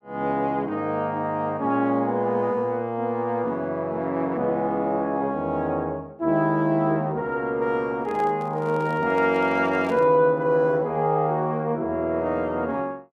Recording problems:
microphone handling noise; from 8 to 10 s; peak -8 dB vs average level

